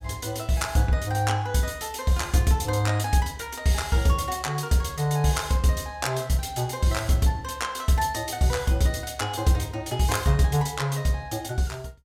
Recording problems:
none

